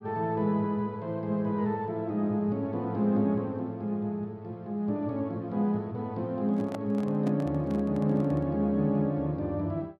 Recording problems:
handling noise; from 6.5 to 8.5 s; peak -6 dB vs average level

